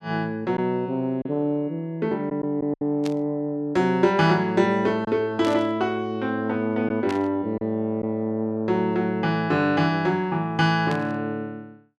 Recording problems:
packet loss; 1.8% of the sound replaced, filled with silence
burst of static; 4 times, first at 3 s; peak -7 dB vs average level

